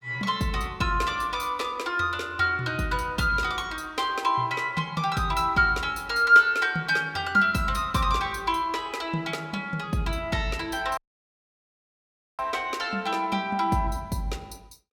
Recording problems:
dropout; at 11 s for 1.5 s

